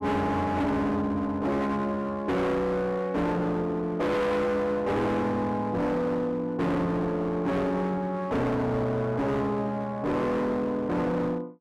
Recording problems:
distorted audio; hard clipping, uneven, signal-to-distortion ratio 6 dB

